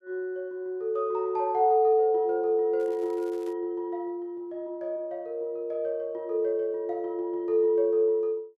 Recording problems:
crackle; at 3 s; loose cable, SNR 30 dB

